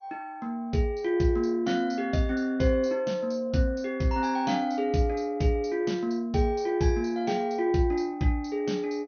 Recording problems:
codec artefacts; MP2, log-spectral distance 2 dB, nothing above 6.3 kHz

